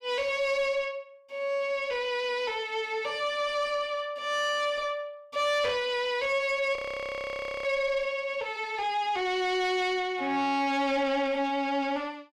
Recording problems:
distortion; soft clipping, signal-to-distortion ratio 10 dB
frozen audio; at 7 s for 1 s

